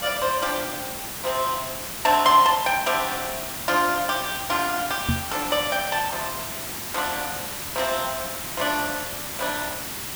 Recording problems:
background hiss; slope -1 dB per octave, SNR 5 dB
knock on the microphone; at 5 s; peak +4 dB vs average level

